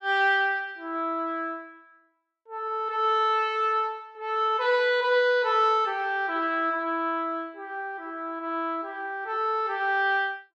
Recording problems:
none

